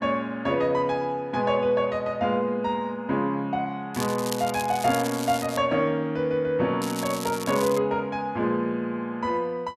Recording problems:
crackle; from 4 to 5.5 s and at 7 s; loose cable, SNR 11 dB

